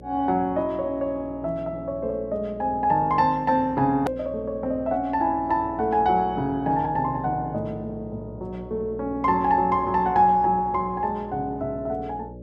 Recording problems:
hum; 60 Hz, harmonics up to 600 Hz, SNR 17 dB
edit click; at 4 s

